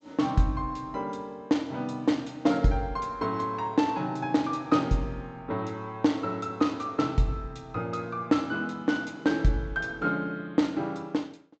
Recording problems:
low-pass filter; nothing above 8 kHz

